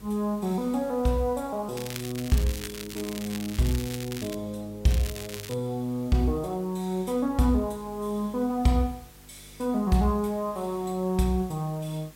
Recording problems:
hum; 50 Hz, harmonics up to 500 Hz, SNR 24 dB
background hiss; slope -1 dB per octave, SNR 24 dB
crackling; from 2 to 4.5 s and at 5 s; loose cable, SNR 11 dB

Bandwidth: 16 kHz